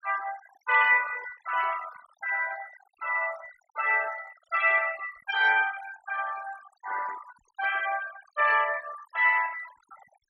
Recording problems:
denoising artefacts; signal-to-artefact ratio 15 dB

